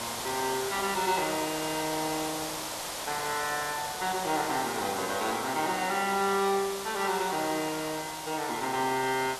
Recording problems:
hiss; SNR 5 dB

